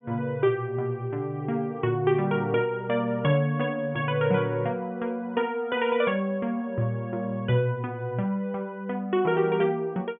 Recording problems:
treble cut off; nothing above 3.4 kHz

